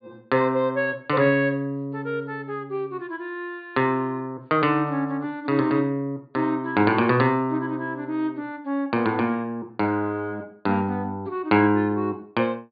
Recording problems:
low-pass filter; nothing above 4.7 kHz

